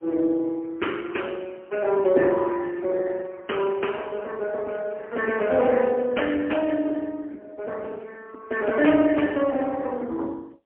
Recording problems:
phone line; 240 Hz to 3.2 kHz, AMR-NB, then MP3

